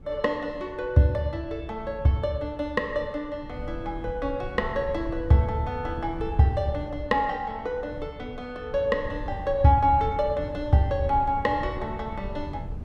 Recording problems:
wind on the microphone; below 120 Hz, SNR 13 dB

